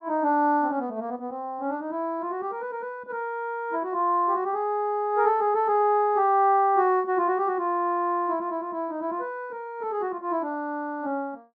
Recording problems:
none

